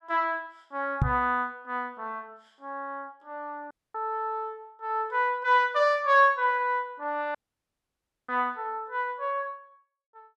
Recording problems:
microphone bump; at 1 s; peak +6 dB vs average level
dropout; at 3.5 s and at 7.5 s for 1 s

